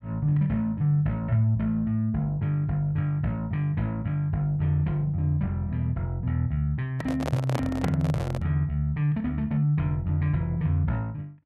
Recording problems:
microphone handling noise; from 7 to 8.5 s; peak -1 dB vs average level

